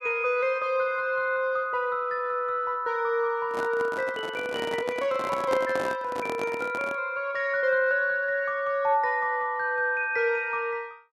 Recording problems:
microphone handling noise; from 3.5 to 7 s; peak 0 dB vs average level

